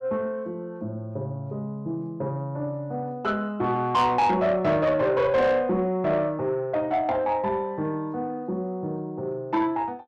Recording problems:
distortion; soft clipping, signal-to-distortion ratio 11 dB

